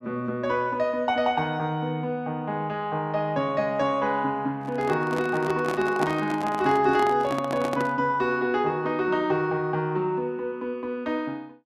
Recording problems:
handling noise; from 4.5 to 8 s; peak +1 dB vs average level

